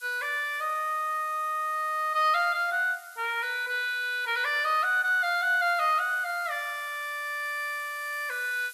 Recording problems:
hiss; slope +5 dB per octave, SNR 21 dB

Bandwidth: 13.5 kHz